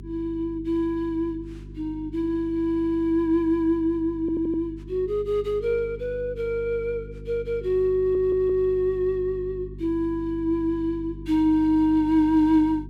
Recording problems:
hum; 50 Hz, harmonics up to 400 Hz, SNR 16 dB
stutter; at 2.5 s, at 4 s and at 8 s

